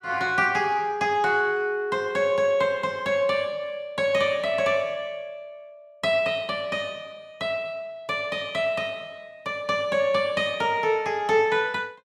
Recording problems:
none

